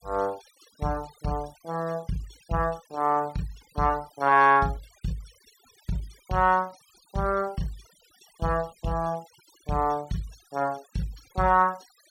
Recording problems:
noise reduction artefacts; signal-to-artefact ratio 25 dB

